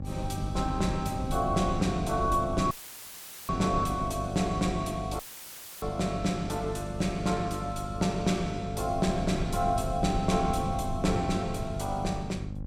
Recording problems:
mains hum; 50 Hz, harmonics up to 800 Hz, SNR 8 dB
low-frequency rumble; below 130 Hz, SNR 10 dB
dropout; at 2.5 s for 1 s and at 5 s for 0.5 s; filled with static

